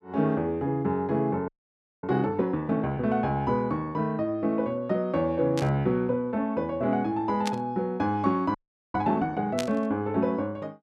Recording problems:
frozen audio; at 1.5 s for 0.5 s and at 8.5 s
burst of static; at 5.5 s, at 7.5 s and at 9.5 s; peak -1 dB vs average level

